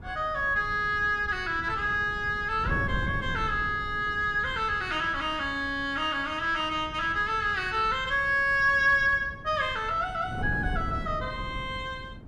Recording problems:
wind on the microphone; below 190 Hz, SNR 13 dB

